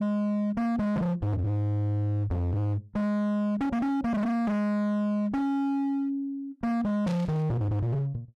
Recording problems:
distortion; hard clipping, signal-to-distortion ratio 7 dB
static burst; at 7 s; peak -12 dB vs average level

